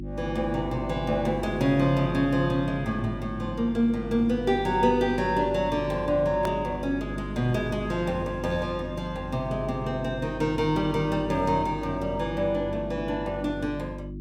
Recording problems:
mains hum; 50 Hz, harmonics up to 350 Hz, SNR 9 dB
edit click; at 6.5 s

